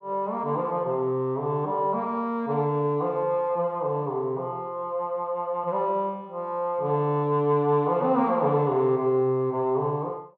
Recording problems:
none

